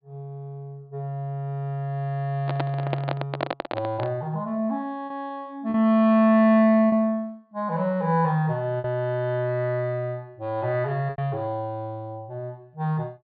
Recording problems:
low-pass filter; nothing above 4.6 kHz
packet loss; 2% of the sound replaced, filled with repeated pitch periods
microphone handling noise; from 2.5 to 4 s; peak +1 dB vs average level

